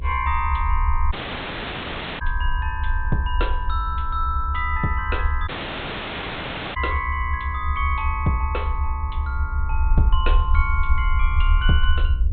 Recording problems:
treble cut off; nothing above 4 kHz
hum; 60 Hz, harmonics up to 660 Hz, SNR 17 dB
rumble; below 72 Hz, SNR -1 dB
dropout; at 1 s for 1 s and at 5.5 s for 1.5 s

